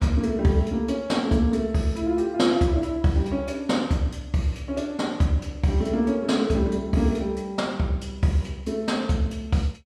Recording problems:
none

